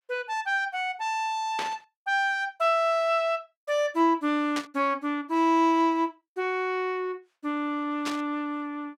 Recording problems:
burst of static; at 1.5 s, at 4.5 s and at 8 s; peak -2 dB vs average level

